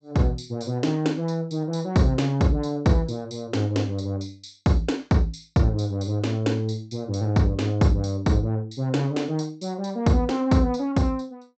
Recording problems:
treble missing; nothing above 8 kHz

